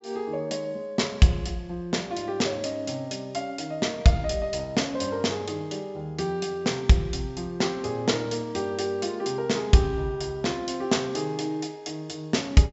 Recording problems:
treble cut off; nothing above 7.6 kHz

